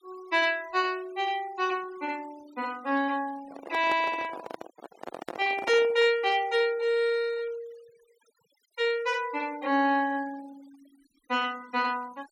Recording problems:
denoising artefacts; signal-to-artefact ratio 23 dB
handling noise; from 3.5 to 6 s; peak -4 dB vs average level

